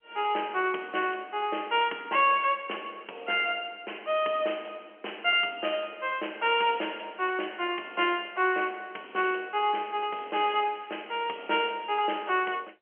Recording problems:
phone line; 260 Hz to 3.2 kHz, G.711
crackling; at 10 s; loose cable, SNR 27 dB

